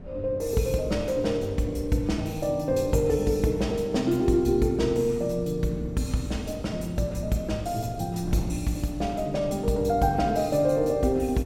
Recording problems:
wind on the microphone; below 180 Hz, SNR 16 dB

